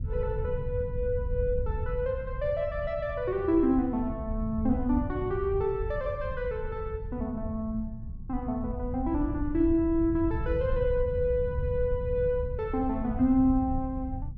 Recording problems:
rumble; below 98 Hz, SNR 7 dB

